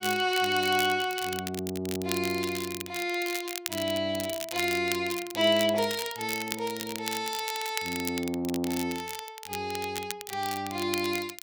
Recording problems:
crackle; vinyl, SNR 8 dB

